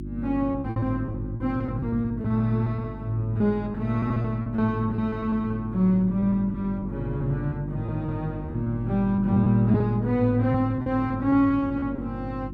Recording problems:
hum; 50 Hz, harmonics up to 350 Hz, SNR 11 dB
packet loss; 11% of the sound replaced, filled with repeated pitch periods

